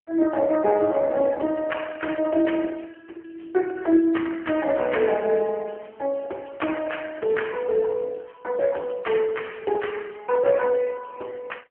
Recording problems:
telephone audio; 280 Hz to 3.2 kHz, AMR-NB

